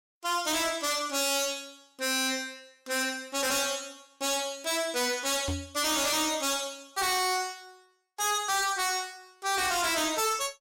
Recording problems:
distortion; hard clipping, signal-to-distortion ratio 6 dB
knock on the microphone; at 5.5 s; peak -1 dB vs average level

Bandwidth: 16 kHz